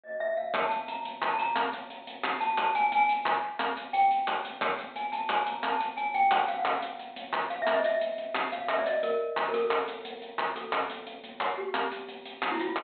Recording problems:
low-pass filter; nothing above 4 kHz

